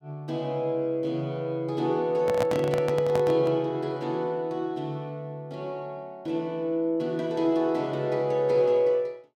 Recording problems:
microphone handling noise; from 2 to 3.5 s; peak +1 dB vs average level

